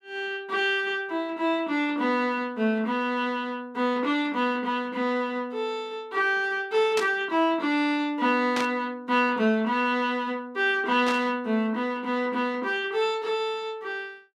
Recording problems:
burst of static; at 7 s, at 8.5 s and at 11 s; peak -1 dB vs average level

